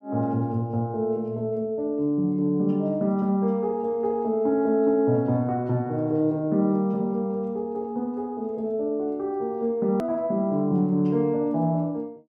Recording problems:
hard cut with a click; at 10 s

